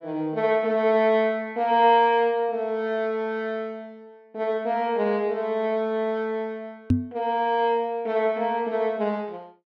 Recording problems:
knock on the microphone; at 7 s; peak +6 dB vs average level

